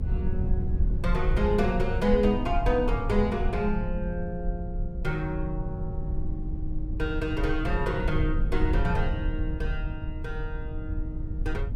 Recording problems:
rumble; below 76 Hz, SNR 1 dB

